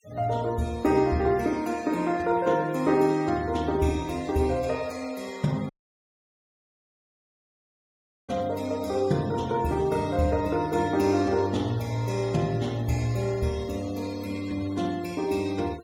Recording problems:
denoising artefacts; signal-to-artefact ratio 22 dB
dropout; at 5.5 s for 2.5 s

